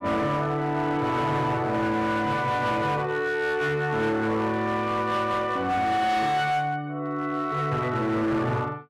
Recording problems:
distorted audio; hard clipping, signal-to-distortion ratio 11 dB

